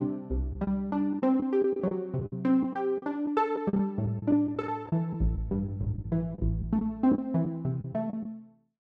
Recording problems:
packet loss; 10% of the sound replaced, filled with the last packet

